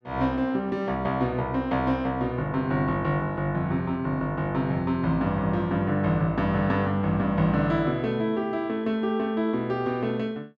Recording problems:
none

